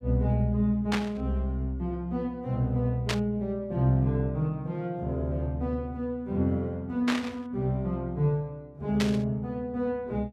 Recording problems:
static burst; 4 times, first at 1 s; peak +4 dB vs average level

